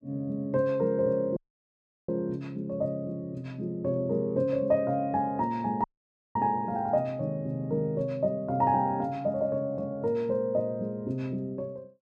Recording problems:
dropout; at 1.5 s for 0.5 s and at 6 s for 0.5 s

